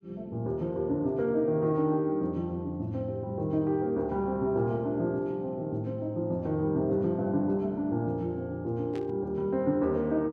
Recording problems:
static burst; at 9 s; peak -14 dB vs average level

